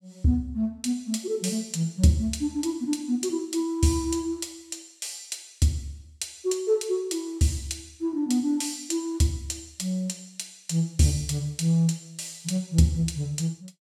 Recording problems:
none

